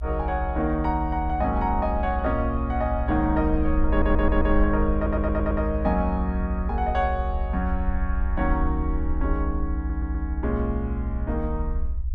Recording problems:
rumble; below 68 Hz, SNR 2 dB
audio stuttering; at 4 s, at 5 s and at 10 s

